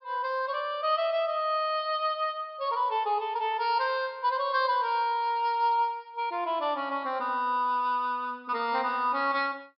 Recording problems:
treble missing; nothing above 5.5 kHz

